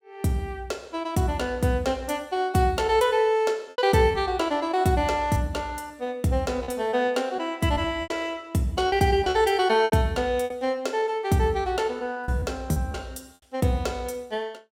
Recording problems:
lost packets; 6% of the sound replaced, filled with repeated pitch periods

